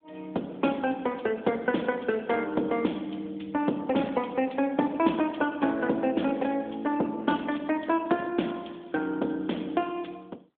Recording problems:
phone line; 220 Hz to 3.5 kHz, AMR-NB

